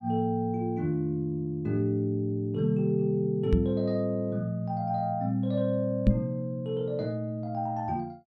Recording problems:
knock on the microphone; at 3.5 s and at 6 s; peak +9 dB vs average level

